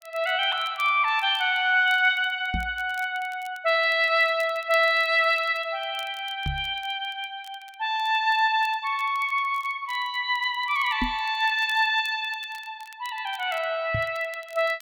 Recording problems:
crackle; vinyl, SNR 27 dB
knock on the microphone; 4 times, first at 2.5 s; peak -1 dB vs average level

